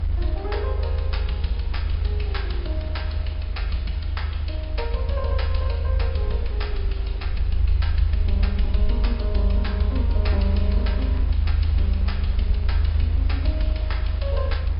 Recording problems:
low-pass filter; nothing above 5.2 kHz
lossy compression; Vorbis, log-spectral distance 2 dB
rumble; below 78 Hz, strongest tone 50 Hz, SNR -8 dB
wind on the microphone; below 1.1 kHz, SNR 10 dB

